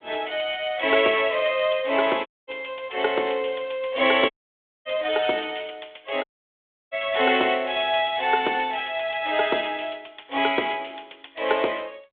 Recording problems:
telephone audio; 280 Hz to 3.6 kHz, G.726
audio cutting out; at 2.5 s, at 4.5 s for 0.5 s and at 6 s for 0.5 s

